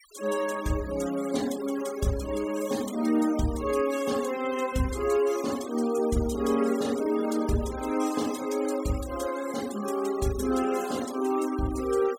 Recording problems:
denoising artefacts; signal-to-artefact ratio 15 dB

